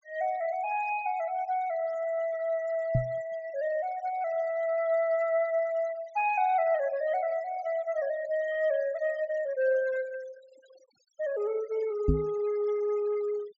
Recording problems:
treble missing; nothing above 8 kHz
noise reduction artefacts; signal-to-artefact ratio 22 dB
knock on the microphone; at 3 s and at 12 s; peak +7 dB vs average level

